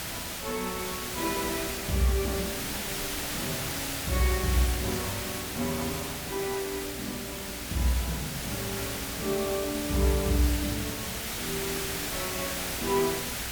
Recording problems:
hum; 60 Hz, harmonics up to 660 Hz, SNR 16 dB
hiss; slope -1 dB per octave, SNR 1 dB

